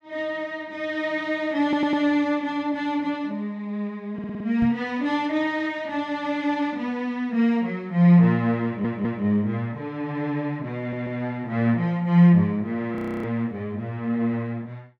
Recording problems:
stutter; 4 times, first at 1.5 s
microphone bump; at 4.5 s; peak -3 dB vs average level
frozen audio; at 13 s

